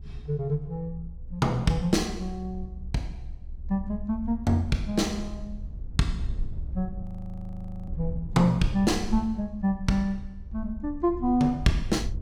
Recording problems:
low-frequency rumble; below 68 Hz, SNR 11 dB
audio freezing; at 7 s for 1 s

